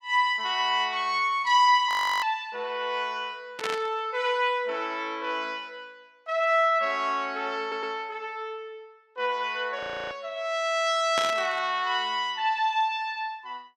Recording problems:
audio freezing; at 2 s and at 10 s
burst of static; at 3.5 s and at 11 s; peak 0 dB vs average level
audio stuttering; at 7.5 s

